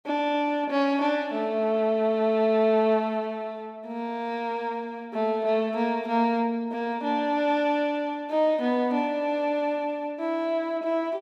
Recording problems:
none

